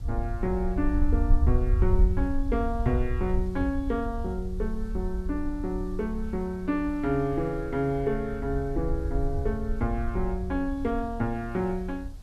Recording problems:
hiss; SNR 25 dB
rumble; below 70 Hz, SNR 2 dB

